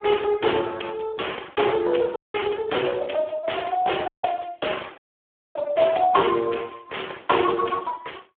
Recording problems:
telephone audio; 300 Hz to 3.4 kHz, Speex
audio cutting out; at 2 s, at 4 s and at 5 s for 0.5 s

